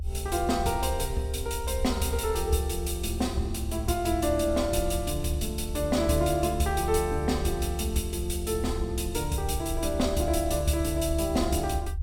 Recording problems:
low-frequency rumble; below 72 Hz, strongest tone 70 Hz, SNR 6 dB

